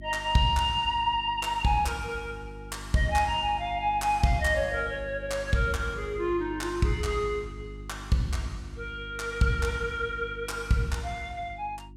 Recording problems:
hum; 50 Hz, harmonics up to 350 Hz, SNR 15 dB

